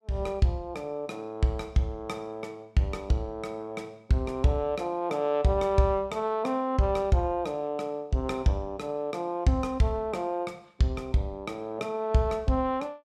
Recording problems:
none

